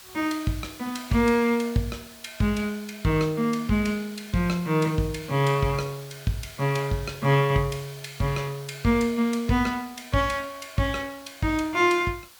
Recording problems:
hiss; slope +1 dB per octave, SNR 20 dB

